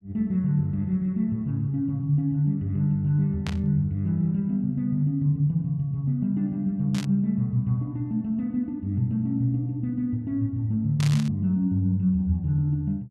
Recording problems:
burst of static; at 3.5 s, at 7 s and at 11 s; peak -5 dB vs average level

